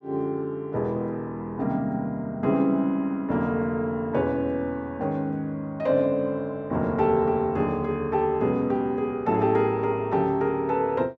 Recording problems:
none

